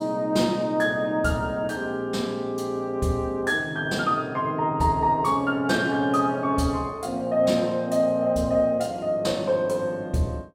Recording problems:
none

